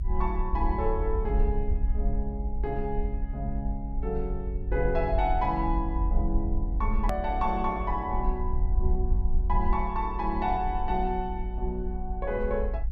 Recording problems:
rumble; below 54 Hz, SNR 0 dB
click at an edit; at 7 s

